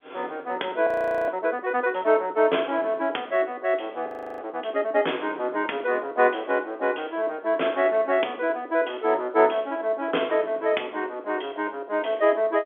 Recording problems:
telephone audio; 260 Hz to 3.5 kHz, G.711
audio freezing; at 1 s and at 4 s

